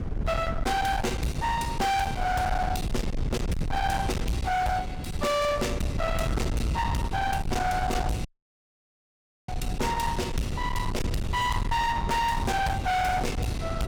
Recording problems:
distortion; hard clipping, uneven, signal-to-distortion ratio 5 dB
low-frequency rumble; below 350 Hz, SNR 4 dB
wind noise; below 450 Hz, SNR 11 dB
dropout; at 8.5 s for 1 s

